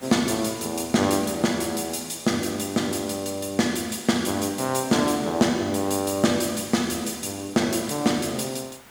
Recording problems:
background hiss; SNR 25 dB

